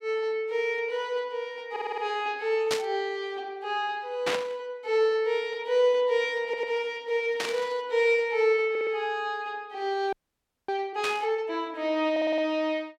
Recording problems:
audio stuttering; 4 times, first at 1.5 s
burst of static; 4 times, first at 2.5 s; peak +2 dB vs average level
frozen audio; at 10 s for 0.5 s

